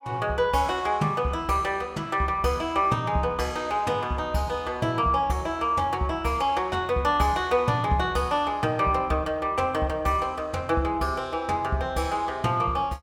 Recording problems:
none

